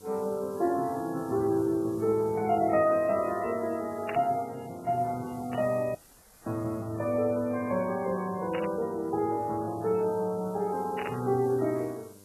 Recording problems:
codec artefacts; MP3, log-spectral distance 3 dB, nothing above 2.5 kHz
hum; 50 Hz, harmonics up to 1.6 kHz, SNR 25 dB
hiss; SNR 28 dB
static burst; 4 times, first at 4 s; peak -3 dB vs average level
audio cutting out; at 6 s for 0.5 s

